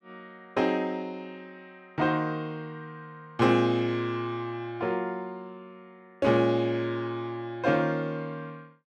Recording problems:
none

